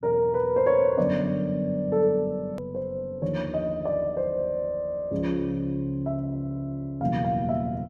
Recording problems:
hard cut with a click; at 2.5 s

